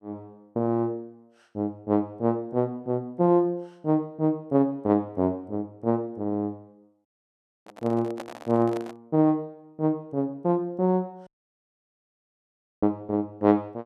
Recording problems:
audio cutting out; at 7 s for 0.5 s and at 11 s for 1.5 s
handling noise; from 7.5 to 9 s; peak -6 dB vs average level

